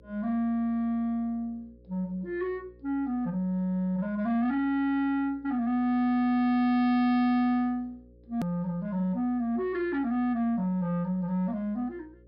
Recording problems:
treble cut off; nothing above 5.5 kHz
distortion; soft clipping, signal-to-distortion ratio 11 dB
electrical hum; 60 Hz, harmonics up to 540 Hz, SNR 28 dB
click at an edit; at 8.5 s

